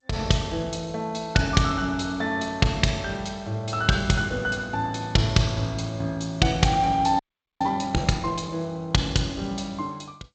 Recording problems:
lossy compression; G.722, log-spectral distance 3 dB, nothing above 7.6 kHz
frozen audio; at 7 s

